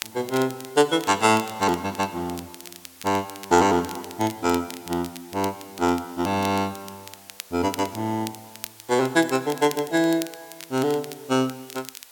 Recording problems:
background hiss; slope +1 dB per octave, SNR 23 dB
crackle; vinyl, SNR 16 dB

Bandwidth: 17.5 kHz